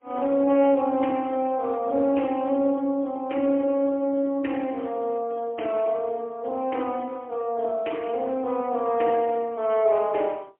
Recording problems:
phone line; 240 Hz to 3.3 kHz, AMR-NB, then MP3

